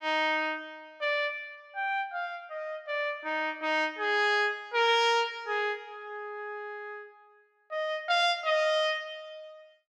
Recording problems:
none

